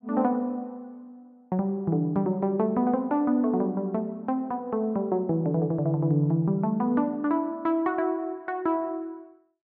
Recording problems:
none

